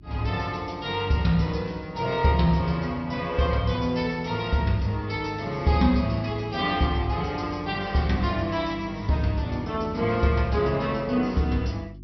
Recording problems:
treble cut off; nothing above 5.7 kHz
hum; 50 Hz, harmonics up to 350 Hz, SNR 20 dB

